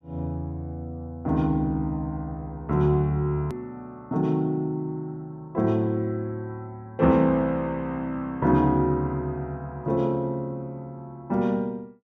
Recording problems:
hard cut with a click; at 3.5 s

